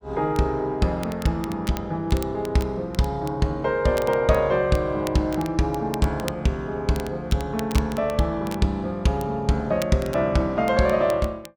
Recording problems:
crackle; vinyl, SNR 19 dB

